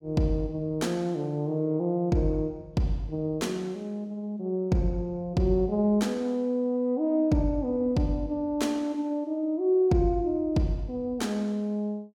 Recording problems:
none

